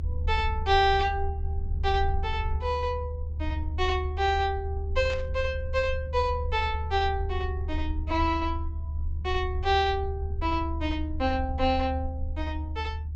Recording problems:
treble missing; nothing above 8 kHz
low-frequency rumble; below 76 Hz, strongest tone 76 Hz, SNR 4 dB
burst of static; at 5 s; peak -8 dB vs average level

